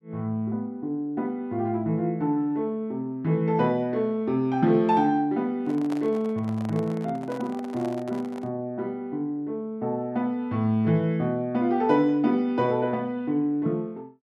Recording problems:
handling noise; from 5.5 to 8.5 s; peak -7 dB vs average level

